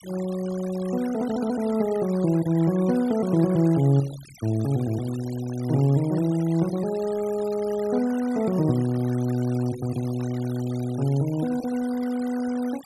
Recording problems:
denoising artefacts; signal-to-artefact ratio 19 dB

